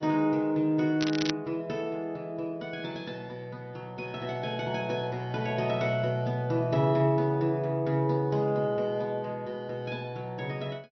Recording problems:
treble missing; nothing above 5.8 kHz
lossy compression; MP3, log-spectral distance 2 dB
crackle; at 1 s; loose cable, SNR 6 dB

